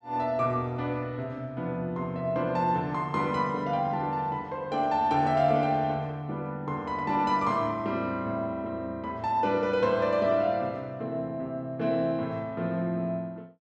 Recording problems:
none

